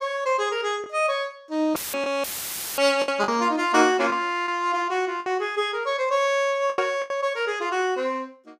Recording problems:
packet loss; 5% of the sound replaced, filled with the last packet
audio cutting out; at 2 s for 0.5 s; filled with static

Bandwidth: 15 kHz